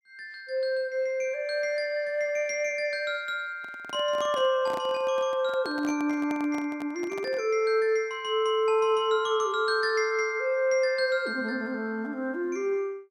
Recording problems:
handling noise; from 3.5 to 7.5 s; peak -8 dB vs average level

